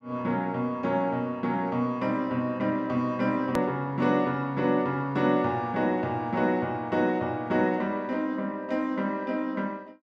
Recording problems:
edit click; at 3.5 s

